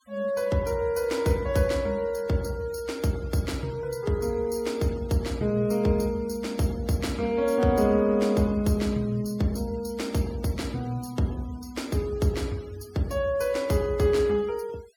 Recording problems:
noise reduction artefacts; signal-to-artefact ratio 24 dB

